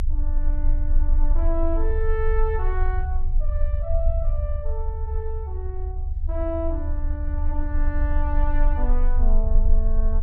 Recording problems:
low-frequency rumble; below 48 Hz, strongest tone 24 Hz, SNR -7 dB

